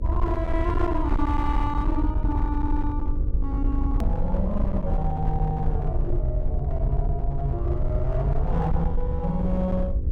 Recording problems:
distorted audio; hard clipping, uneven, signal-to-distortion ratio 10 dB
hum; 50 Hz, harmonics up to 550 Hz, SNR 10 dB
rumble; below 70 Hz, SNR -1 dB
edit click; at 4 s

